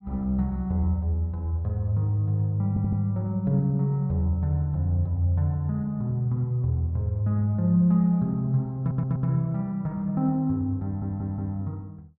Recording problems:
audio stuttering; at 2.5 s, at 9 s and at 11 s

